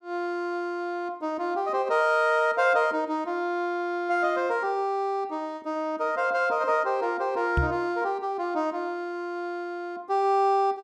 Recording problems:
microphone thump; at 7.5 s; peak +4 dB vs average level

